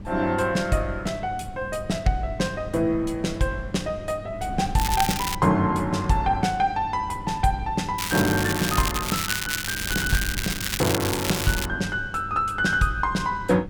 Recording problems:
electrical hum; 50 Hz, harmonics up to 600 Hz, SNR 17 dB
wind noise; below 190 Hz, SNR 15 dB
crackle; at 5 s and from 8 to 12 s; loose cable, SNR 3 dB

